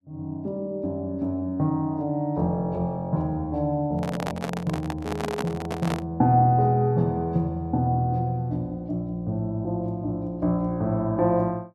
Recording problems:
handling noise; from 4 to 6 s; peak -1 dB vs average level

